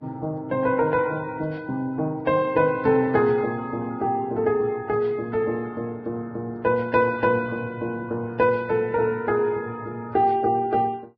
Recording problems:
lossy codec; Vorbis, log-spectral distance 2 dB

